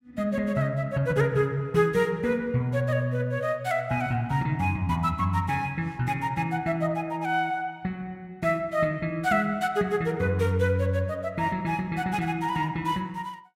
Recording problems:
none

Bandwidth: 16 kHz